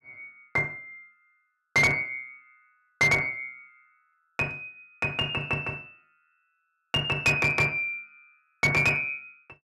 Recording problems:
distortion; hard clipping, uneven, signal-to-distortion ratio 12 dB

